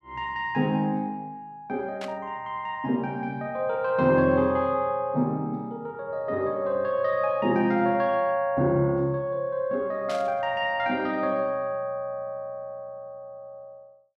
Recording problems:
static burst; at 2 s and at 10 s; peak -8 dB vs average level

